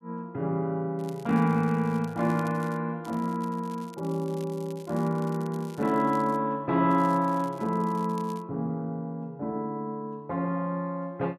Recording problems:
crackling; from 1 to 3 s, from 3 to 6.5 s and from 7 to 8.5 s; loose cable, SNR 25 dB

